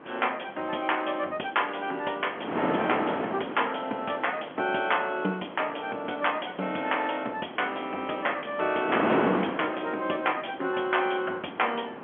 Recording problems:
phone line; 190 Hz to 3.4 kHz, G.711
wind on the microphone; below 1.1 kHz, SNR 5 dB
crackling; from 1.5 to 7 s; loose cable, SNR 30 dB

